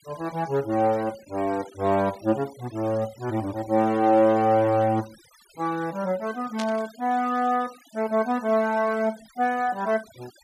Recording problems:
noise reduction artefacts; signal-to-artefact ratio 22 dB
burst of static; at 6.5 s; peak -6 dB vs average level

